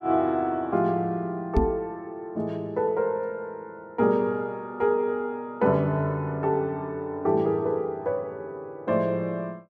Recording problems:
microphone thump; at 1.5 s; peak +7 dB vs average level

